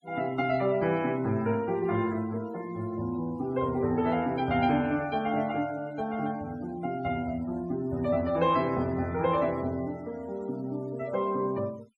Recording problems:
denoising artefacts; signal-to-artefact ratio 23 dB

